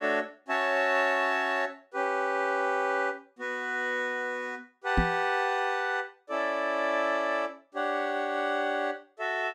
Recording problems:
microphone bump; at 5 s; peak +6 dB vs average level

